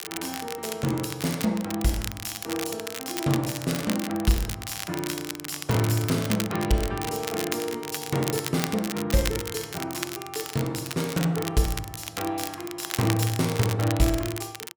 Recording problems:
crackle; vinyl, SNR 7 dB

